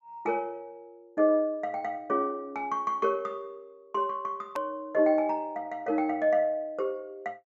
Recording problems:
low-pass filter; nothing above 8 kHz
click at an edit; at 4.5 s

